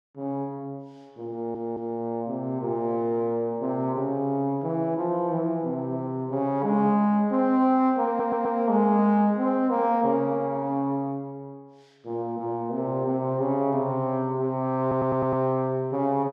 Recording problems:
audio stuttering; at 1.5 s, at 8 s and at 15 s

